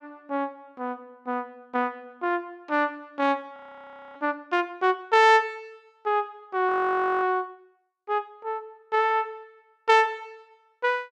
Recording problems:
frozen audio; at 3.5 s for 0.5 s and at 6.5 s for 0.5 s

